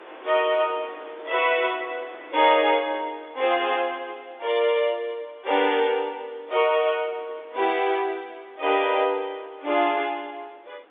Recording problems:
phone line; 260 Hz to 3.6 kHz, G.711
wind on the microphone; below 1.6 kHz, SNR 24 dB

